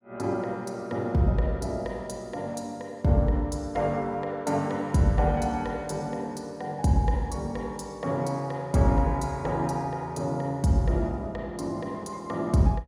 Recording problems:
none

